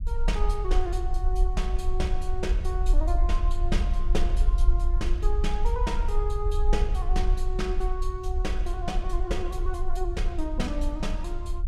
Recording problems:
rumble; below 50 Hz, SNR -5 dB

